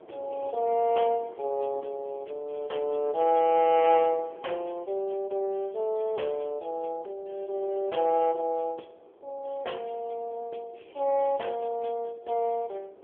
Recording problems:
telephone audio; 300 Hz to 3.3 kHz, AMR-NB
wind on the microphone; below 640 Hz, SNR 23 dB

